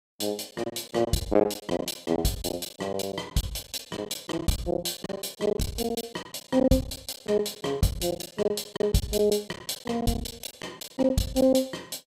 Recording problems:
packet loss; 15% of the sound replaced, filled with silence

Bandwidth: 15.5 kHz